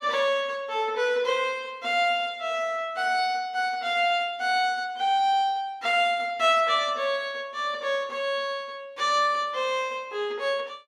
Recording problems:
none

